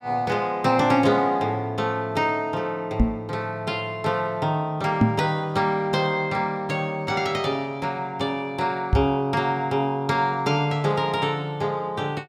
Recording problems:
knock on the microphone; at 3 s, at 5 s and at 9 s; peak +9 dB vs average level

